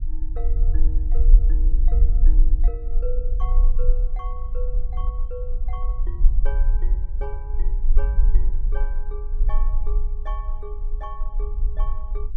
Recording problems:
low-frequency rumble; below 40 Hz, strongest tone 18 Hz, SNR -16 dB

